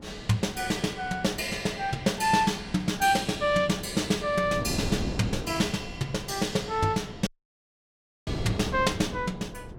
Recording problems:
wind on the microphone; below 350 Hz, SNR 11 dB
audio cutting out; at 7.5 s for 1 s

